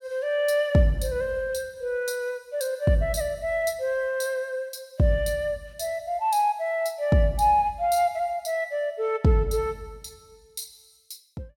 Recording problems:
none

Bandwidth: 16.5 kHz